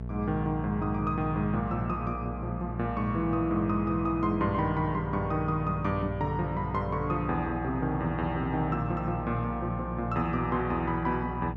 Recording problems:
electrical hum; 60 Hz, harmonics up to 660 Hz, SNR 7 dB

